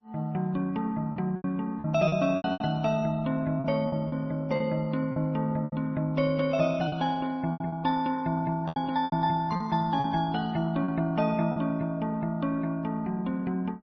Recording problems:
codec artefacts; Opus, then MP3, log-spectral distance 2 dB, nothing above 5.8 kHz
packet loss; 8% of the sound replaced, filled with repeated pitch periods

